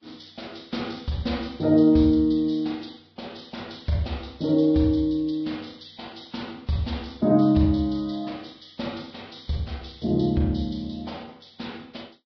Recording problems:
codec artefacts; Vorbis, log-spectral distance 7 dB, nothing above 5.5 kHz

